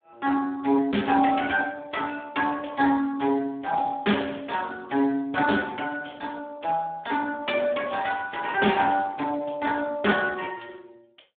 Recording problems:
telephone audio; 240 Hz to 3.5 kHz, Speex

